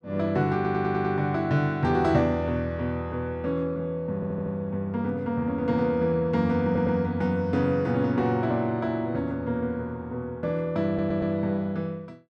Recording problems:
audio stuttering; 4 times, first at 0.5 s

